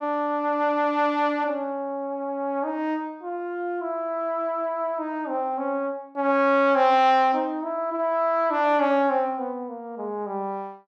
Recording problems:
none

